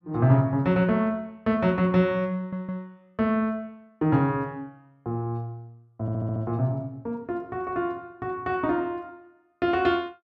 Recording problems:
audio stuttering; at 2.5 s and at 6 s

